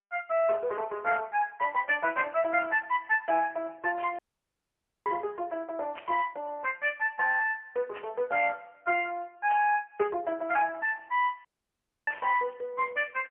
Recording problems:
phone line; 340 Hz to 2.6 kHz, AMR-NB, then MP3
burst of static; 5 times, first at 4 s; peak -10 dB vs average level
dropout; at 4 s for 1 s and at 11 s for 0.5 s

